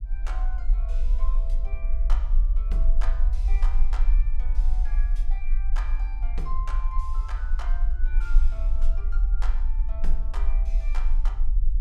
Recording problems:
rumble; below 40 Hz, strongest tone 20 Hz, SNR -16 dB

